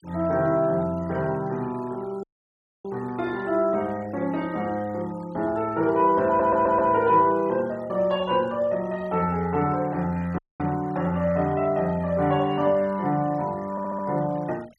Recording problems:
denoising artefacts; signal-to-artefact ratio 25 dB
dropout; at 2 s for 0.5 s and at 10 s
stutter; at 6.5 s and at 14 s

